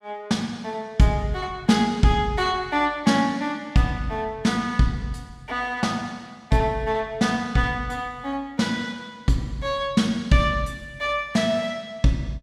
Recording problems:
none

